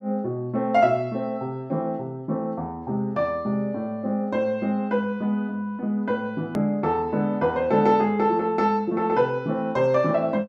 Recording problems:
edit click; at 6.5 s

